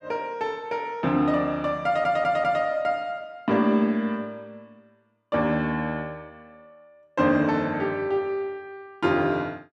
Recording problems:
audio stuttering; at 2 s

